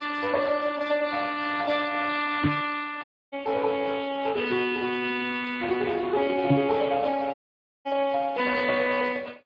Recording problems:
lossy compression; MP3, then Speex, log-spectral distance 5 dB
microphone bump; at 2.5 s and at 6.5 s; peak +7 dB vs average level
audio cutting out; at 3 s and at 7.5 s for 0.5 s

